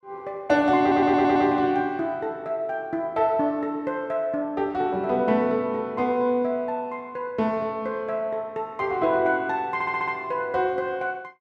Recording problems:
audio stuttering; at 1 s and at 9.5 s

